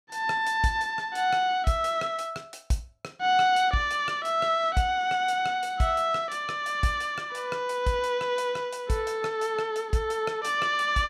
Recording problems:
none

